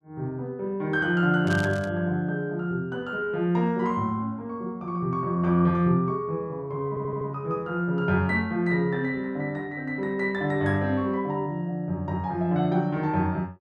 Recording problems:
burst of static; at 1.5 s; peak -8 dB vs average level
stutter; at 7 s

